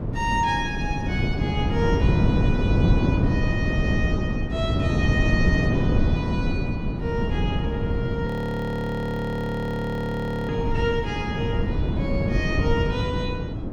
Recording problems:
wind noise; below 240 Hz, SNR -5 dB
audio freezing; at 8.5 s for 2 s

